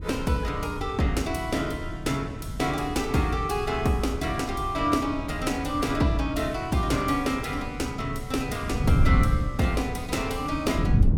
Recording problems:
wind noise; below 140 Hz, SNR 5 dB

